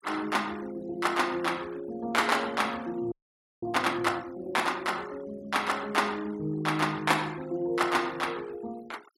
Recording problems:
noise reduction artefacts; signal-to-artefact ratio 21 dB
frozen audio; at 3 s for 0.5 s

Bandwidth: 16 kHz